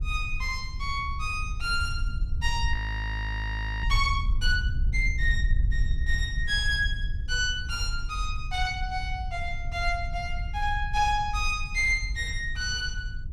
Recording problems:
rumble; below 66 Hz, SNR 3 dB
frozen audio; at 2.5 s for 1 s

